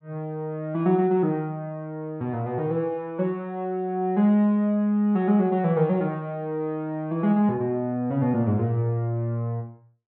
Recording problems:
treble cut off; nothing above 4.3 kHz

